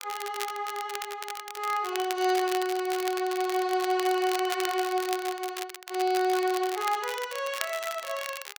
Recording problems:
crackling; vinyl, SNR 9 dB

